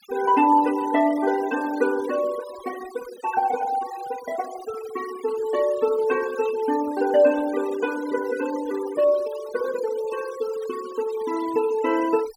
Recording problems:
noise reduction artefacts; signal-to-artefact ratio 16 dB

